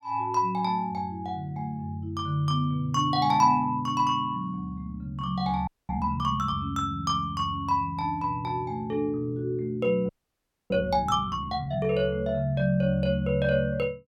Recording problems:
audio freezing; at 5.5 s and at 10 s for 0.5 s

